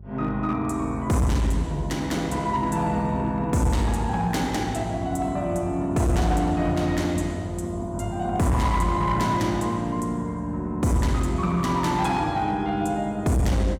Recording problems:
distortion; hard clipping, signal-to-distortion ratio 11 dB
hum; 50 Hz, harmonics up to 400 Hz, SNR 17 dB

